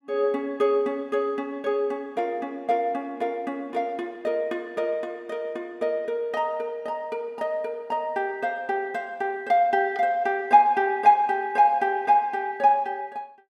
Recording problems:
none

